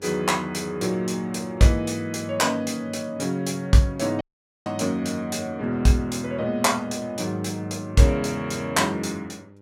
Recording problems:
hum; 50 Hz, harmonics up to 1.4 kHz, SNR 25 dB
dropout; at 4 s

